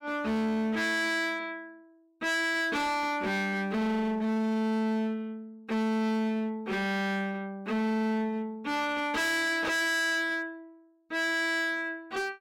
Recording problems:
distortion; hard clipping, signal-to-distortion ratio 6 dB

